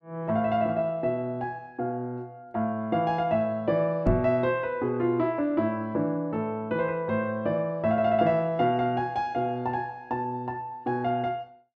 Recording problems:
microphone thump; at 4 s; peak +6 dB vs average level

